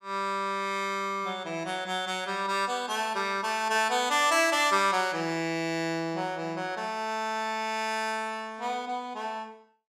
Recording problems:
none

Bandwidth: 15.5 kHz